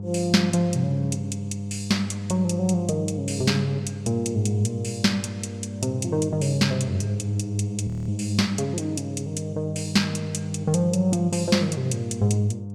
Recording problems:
electrical hum; 50 Hz, harmonics up to 700 Hz, SNR 8 dB
frozen audio; at 8 s

